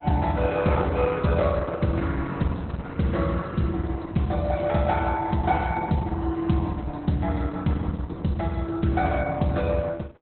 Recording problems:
codec artefacts; Opus, log-spectral distance 5 dB, nothing above 4 kHz

